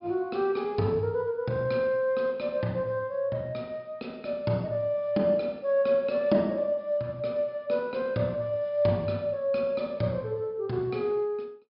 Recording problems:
treble cut off; nothing above 5.5 kHz

